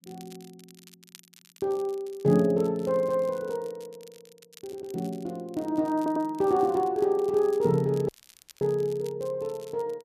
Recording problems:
crackling; vinyl, SNR 26 dB
audio stuttering; at 4.5 s and at 6 s
audio cutting out; at 8 s for 0.5 s

